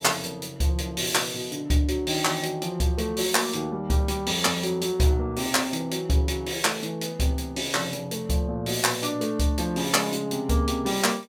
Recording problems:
none

